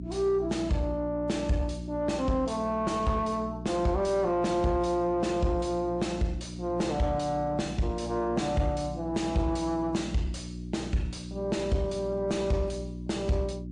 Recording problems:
lossy compression; MP3, log-spectral distance 2 dB, nothing above 9.5 kHz
distortion; soft clipping, signal-to-distortion ratio 10 dB
hum; 60 Hz, harmonics up to 360 Hz, SNR 10 dB

